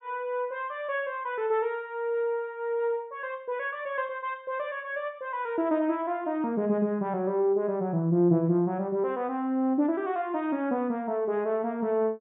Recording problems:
treble missing; nothing above 4 kHz

